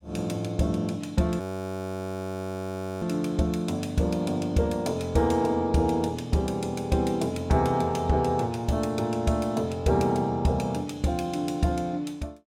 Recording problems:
frozen audio; at 1.5 s for 1.5 s

